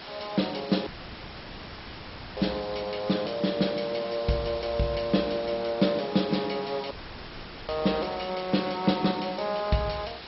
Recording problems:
lossy compression; MP2, log-spectral distance 12 dB, nothing above 5.5 kHz
hiss; slope -2 dB per octave, SNR 13 dB
dropout; at 1 s for 1.5 s and at 7 s for 1 s

